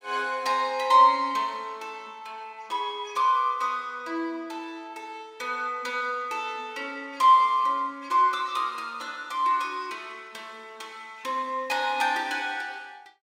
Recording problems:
none

